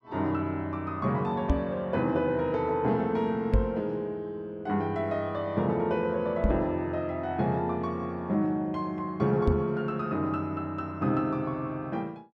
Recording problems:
microphone thump; 4 times, first at 1.5 s; peak +7 dB vs average level

